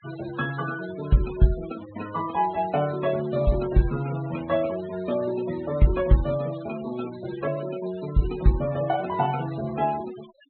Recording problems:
low-pass filter; nothing above 4 kHz
denoising artefacts; signal-to-artefact ratio 17 dB

